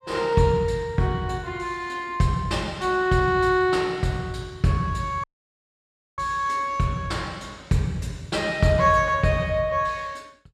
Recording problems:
audio cutting out; at 5 s for 1 s

